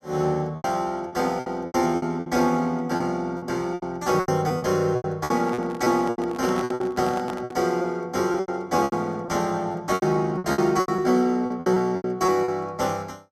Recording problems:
lost packets; 15% of the sound replaced, filled with repeated pitch periods
handling noise; from 5.5 to 7.5 s; peak -5 dB vs average level

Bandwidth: 13.5 kHz